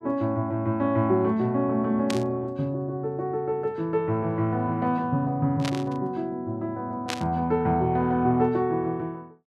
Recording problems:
static burst; at 2 s, at 5.5 s and at 7 s; peak -1 dB vs average level

